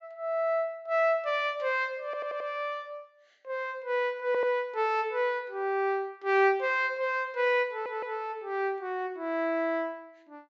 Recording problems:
treble missing; nothing above 8 kHz
audio stuttering; at 2 s, at 4.5 s and at 7.5 s

